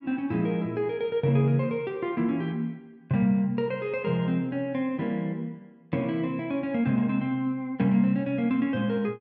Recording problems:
none

